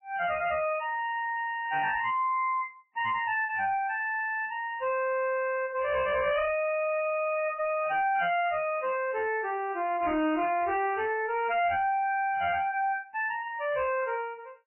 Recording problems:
codec artefacts; MP3, log-spectral distance 4 dB, nothing above 2.7 kHz
distorted audio; hard clipping, signal-to-distortion ratio 11 dB

